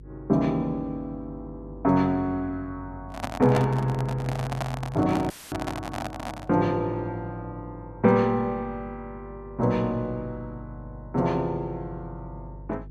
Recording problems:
mains hum; 50 Hz, harmonics up to 450 Hz, SNR 18 dB
microphone handling noise; from 3 to 6.5 s; peak +2 dB vs average level
audio cutting out; at 5.5 s; filled with static

